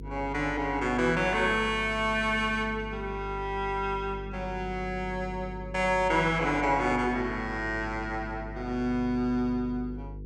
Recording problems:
electrical hum; 50 Hz, harmonics up to 500 Hz, SNR 12 dB

